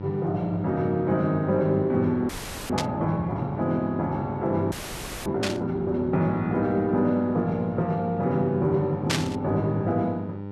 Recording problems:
hum; 50 Hz, harmonics up to 1.4 kHz, SNR 11 dB
audio freezing; at 2.5 s and at 4.5 s for 0.5 s
static burst; at 3 s, at 5.5 s and at 9 s; peak +4 dB vs average level

